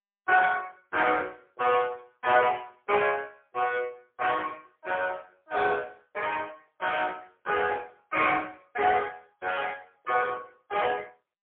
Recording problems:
phone line; 320 Hz to 2.8 kHz, AMR-NB, then MP3

